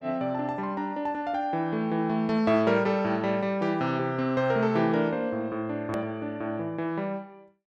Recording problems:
edit click; at 6 s

